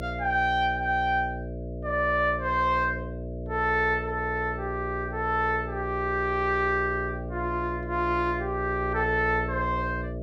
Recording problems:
electrical hum; 60 Hz, harmonics up to 660 Hz, SNR 8 dB

